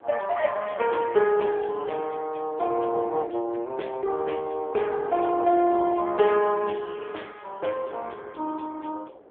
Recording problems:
phone line; 260 Hz to 3.3 kHz, AMR-NB
wind on the microphone; below 660 Hz, SNR 24 dB

